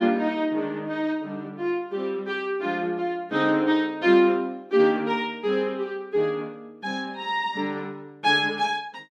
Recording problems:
none

